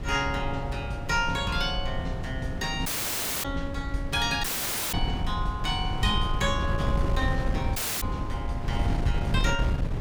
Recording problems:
wind on the microphone; below 140 Hz, SNR 1 dB
audio cutting out; at 3 s for 0.5 s, at 4.5 s and at 8 s

